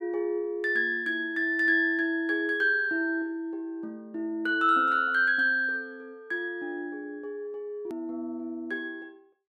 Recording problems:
click at an edit; at 8 s

